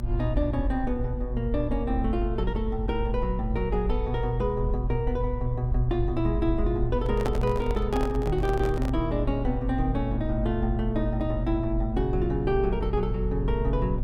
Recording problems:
electrical hum; 60 Hz, harmonics up to 600 Hz, SNR 7 dB
rumble; below 52 Hz, strongest tone 46 Hz, SNR 3 dB
handling noise; from 7 to 9 s; peak +1 dB vs average level

